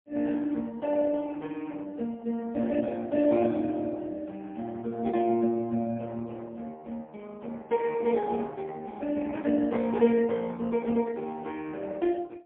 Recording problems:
telephone audio; 170 Hz to 3.3 kHz, AMR-NB, then MP3

